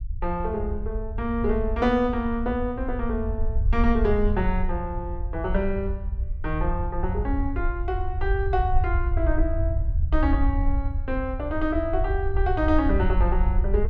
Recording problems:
rumble; below 70 Hz, SNR 1 dB

